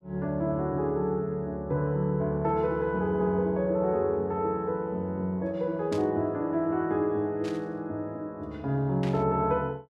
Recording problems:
static burst; at 6 s, at 7.5 s and at 9 s; peak -9 dB vs average level

